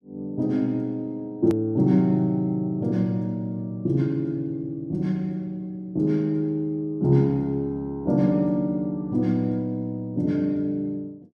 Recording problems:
edit click; at 1.5 s

